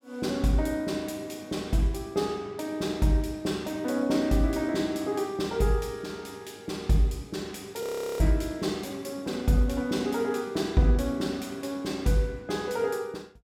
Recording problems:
frozen audio; at 8 s

